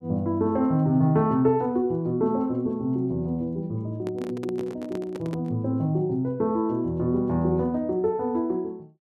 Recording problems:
microphone handling noise; from 4 to 5.5 s; peak -7 dB vs average level

